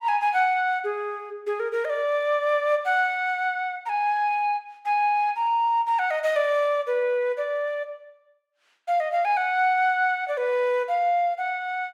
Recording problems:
none

